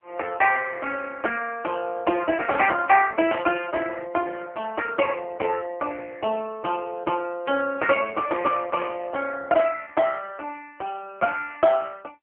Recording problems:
telephone audio; 240 Hz to 3.1 kHz, AMR-NB

